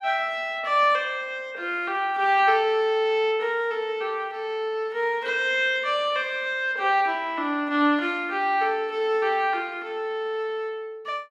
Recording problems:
none

